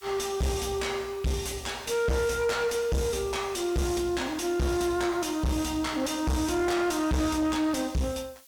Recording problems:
distorted audio; soft clipping, signal-to-distortion ratio 7 dB
background hiss; SNR 26 dB

